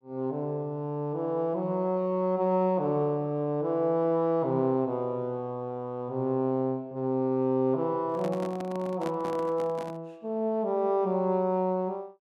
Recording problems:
handling noise; from 8 to 10 s; peak -5 dB vs average level

